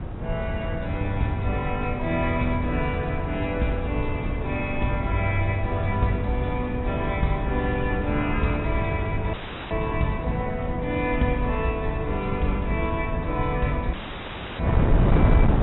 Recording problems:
treble missing; nothing above 3.9 kHz
wind noise; below 190 Hz, SNR 1 dB
audio cutting out; at 9.5 s and at 14 s for 0.5 s

